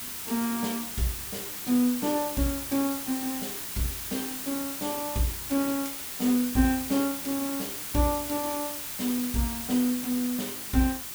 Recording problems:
background hiss; SNR 4 dB

